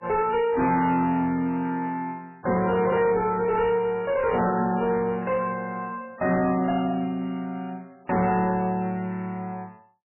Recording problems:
lossy codec; MP3, log-spectral distance 3 dB, nothing above 2.4 kHz
distorted audio; soft clipping, signal-to-distortion ratio 11 dB

